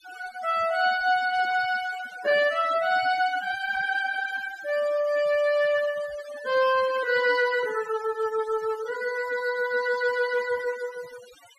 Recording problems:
noise reduction artefacts; signal-to-artefact ratio 17 dB

